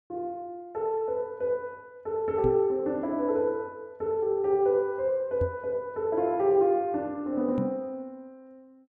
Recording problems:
microphone bump; at 2.5 s, at 5.5 s and at 7.5 s; peak 0 dB vs average level

